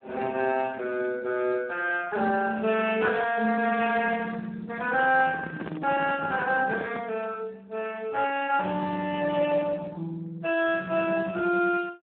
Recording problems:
telephone audio; 240 Hz to 2.9 kHz, Speex
microphone handling noise; from 5 to 7 s; peak -4 dB vs average level

